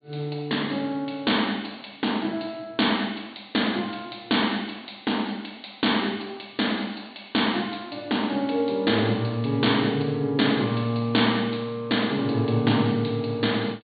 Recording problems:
treble cut off; nothing above 4.5 kHz

